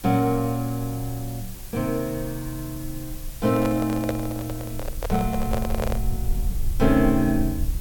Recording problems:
background hiss; slope 0 dB per octave, SNR 15 dB
rumble; below 60 Hz, SNR 9 dB
microphone handling noise; from 3.5 to 6 s; peak +1 dB vs average level

